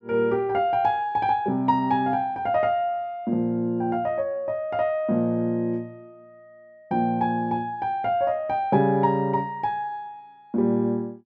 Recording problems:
none

